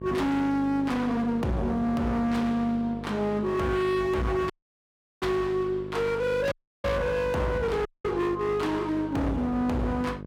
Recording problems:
distorted audio; hard clipping, uneven, signal-to-distortion ratio 7 dB
electrical hum; 50 Hz, harmonics up to 1.1 kHz, SNR 12 dB
audio cutting out; at 4.5 s for 0.5 s, at 6.5 s and at 8 s

